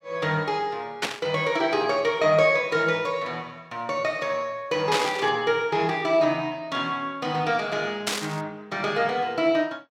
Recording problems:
burst of static; at 1 s, at 5 s and at 8 s; peak +3 dB vs average level

